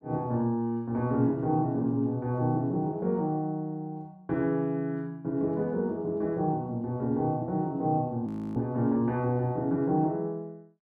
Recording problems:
audio freezing; at 8.5 s

